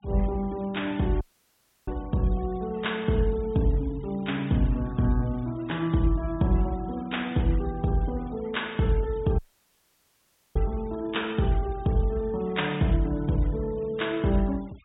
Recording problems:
treble missing; nothing above 4 kHz
denoising artefacts; signal-to-artefact ratio 24 dB
dropout; at 1 s for 0.5 s and at 9.5 s for 1 s

